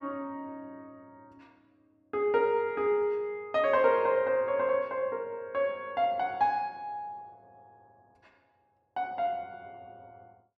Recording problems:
none

